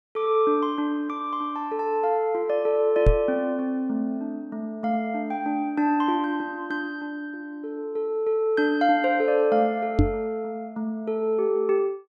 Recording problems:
microphone thump; at 3 s and at 10 s; peak +9 dB vs average level

